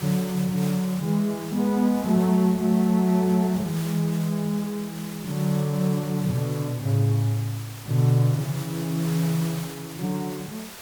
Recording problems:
hiss; slope -2 dB per octave, SNR 15 dB

